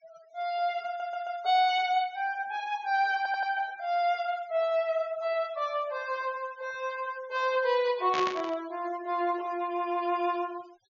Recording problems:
treble cut off; nothing above 7.1 kHz
denoising artefacts; signal-to-artefact ratio 22 dB
audio stuttering; at 1 s and at 3 s
burst of static; at 8 s; peak 0 dB vs average level

